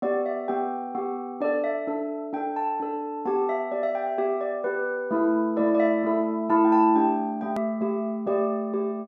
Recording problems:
hard cut with a click; at 7.5 s

